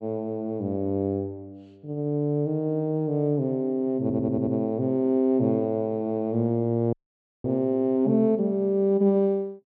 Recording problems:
audio stuttering; at 4 s
audio cutting out; at 7 s for 0.5 s

